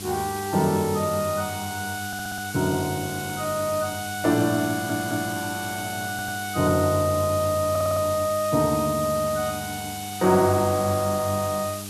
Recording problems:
hum; 50 Hz, harmonics up to 800 Hz, SNR 14 dB
hiss; slope +2 dB per octave, SNR 10 dB
stutter; 4 times, first at 2 s

